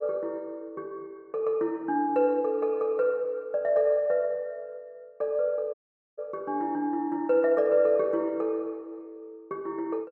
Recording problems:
dropout; at 5.5 s

